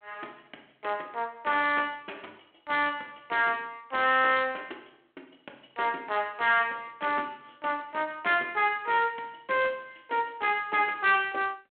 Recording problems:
phone line; 240 Hz to 3.9 kHz, G.726
distortion; hard clipping, uneven, signal-to-distortion ratio 10 dB

